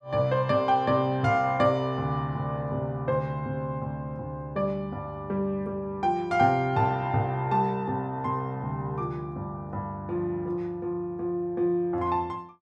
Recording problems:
none

